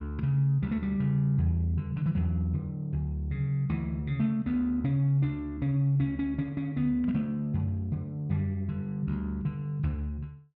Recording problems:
none

